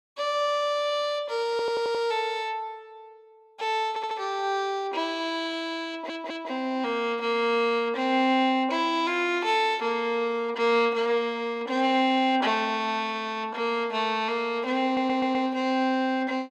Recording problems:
audio stuttering; 4 times, first at 1.5 s

